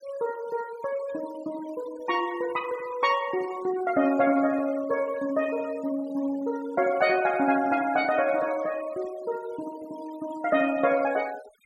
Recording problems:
denoising artefacts; signal-to-artefact ratio 19 dB

